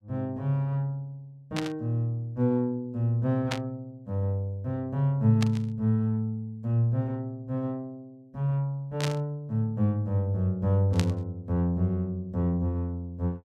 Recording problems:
static burst; 5 times, first at 1.5 s; peak +1 dB vs average level

